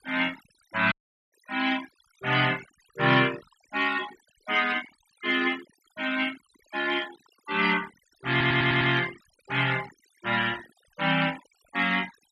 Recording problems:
noise reduction artefacts; signal-to-artefact ratio 16 dB
audio cutting out; at 1 s
audio stuttering; at 8.5 s

